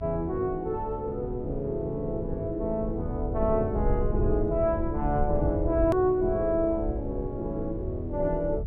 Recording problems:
hum; 50 Hz, harmonics up to 900 Hz, SNR 20 dB
low-frequency rumble; below 88 Hz, SNR 7 dB
hard cut with a click; at 6 s

